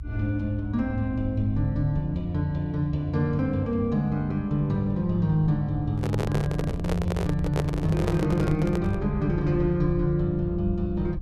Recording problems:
rumble; below 92 Hz, SNR 10 dB
handling noise; from 6 to 9 s; peak +1 dB vs average level

